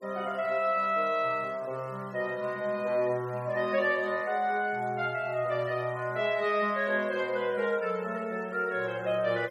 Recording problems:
noise reduction artefacts; signal-to-artefact ratio 26 dB

